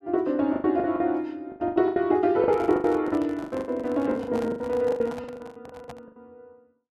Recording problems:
lost packets; 22% of the sound replaced, filled with the last packet
handling noise; from 2.5 to 6 s; peak -9 dB vs average level

